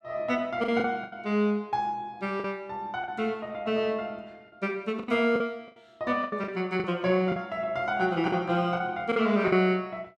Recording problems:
packet loss; 8% of the sound replaced, filled with the last packet

